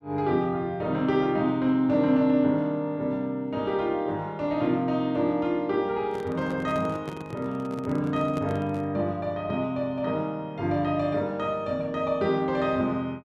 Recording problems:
microphone handling noise; from 6 to 9 s; peak -5 dB vs average level

